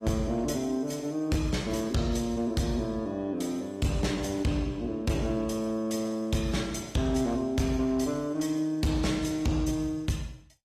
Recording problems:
lossy codec; AAC, log-spectral distance 3 dB
distorted audio; hard clipping, signal-to-distortion ratio 11 dB

